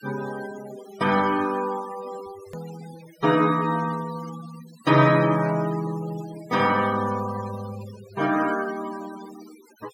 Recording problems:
noise reduction artefacts; signal-to-artefact ratio 17 dB
edit click; at 2.5 s

